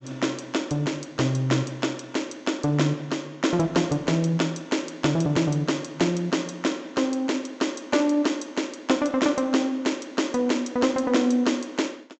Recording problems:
treble cut off; nothing above 7.8 kHz

